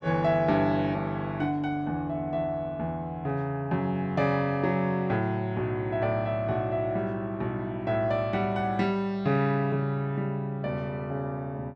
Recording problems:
none

